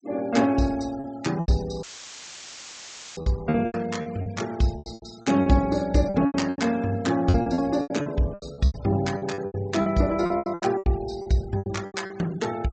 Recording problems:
treble missing; nothing above 8 kHz
denoising artefacts; signal-to-artefact ratio 22 dB
lost packets; 17% of the sound replaced, filled with repeated pitch periods
dropout; at 2 s for 1.5 s; filled with static

